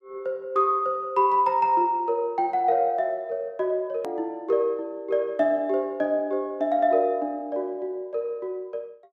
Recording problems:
hard cut with a click; at 4 s

